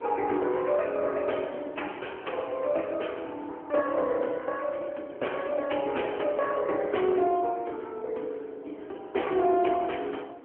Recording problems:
phone line; 260 Hz to 3.3 kHz, AMR-NB
wind noise; below 600 Hz, SNR 23 dB

